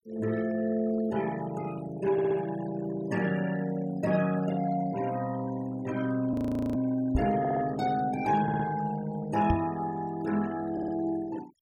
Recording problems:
denoising artefacts; signal-to-artefact ratio 17 dB
stutter; 4 times, first at 2 s
audio freezing; at 6.5 s
microphone bump; at 7 s and at 9.5 s; peak +5 dB vs average level

